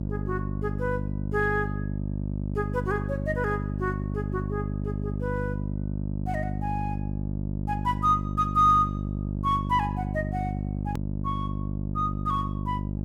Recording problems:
hum; 50 Hz, harmonics up to 650 Hz, SNR 2 dB
click at an edit; at 11 s

